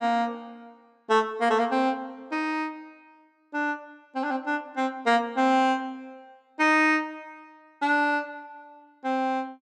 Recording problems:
none

